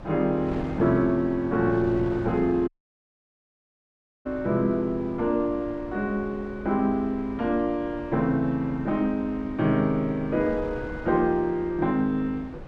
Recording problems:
hum; 50 Hz, harmonics up to 550 Hz, SNR 25 dB
wind noise; below 520 Hz, SNR 15 dB
audio cutting out; at 2.5 s for 1.5 s

